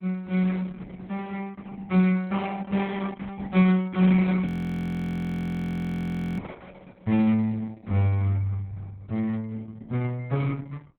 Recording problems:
codec artefacts; Opus, log-spectral distance 3 dB, nothing above 18.9 kHz
frozen audio; at 4.5 s for 2 s

